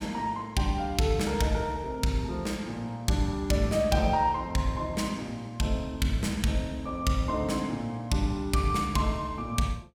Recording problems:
none

